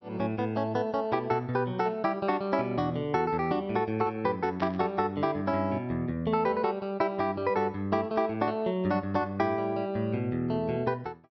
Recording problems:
low-pass filter; nothing above 5.8 kHz
static burst; at 4.5 s; peak -9 dB vs average level

